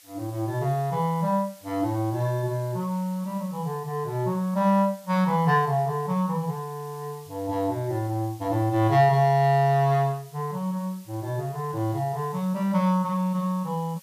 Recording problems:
hiss; slope +3 dB per octave, SNR 24 dB

